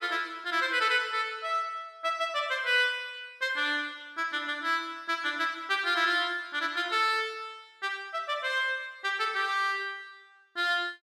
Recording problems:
none

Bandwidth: 14.5 kHz